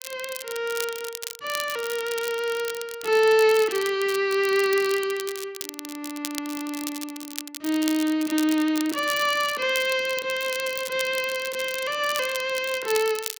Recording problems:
crackle; vinyl, SNR 11 dB

